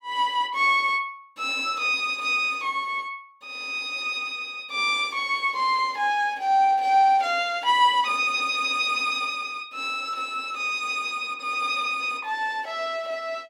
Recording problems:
none

